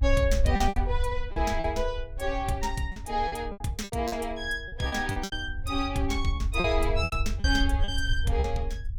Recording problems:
rumble; below 74 Hz, SNR 3 dB
lost packets; 11% of the sound replaced, filled with repeated pitch periods

